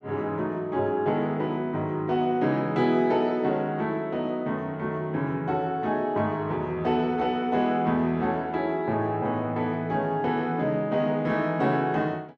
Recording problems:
none

